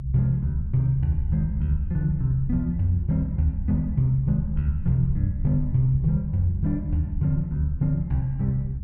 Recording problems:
low-frequency rumble; below 86 Hz, SNR 7 dB

